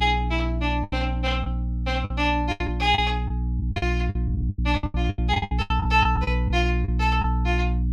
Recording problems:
hum; 60 Hz, harmonics up to 300 Hz, SNR 0 dB
packet loss; 15% of the sound replaced, filled with the last packet

